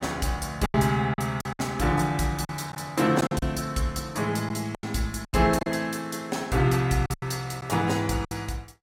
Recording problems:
lossy compression; AAC, log-spectral distance 3 dB, nothing above 15.5 kHz
packet loss; 9% of the sound replaced, filled with silence

